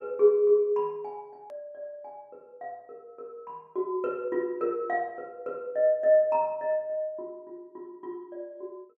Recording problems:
click at an edit; at 1.5 s

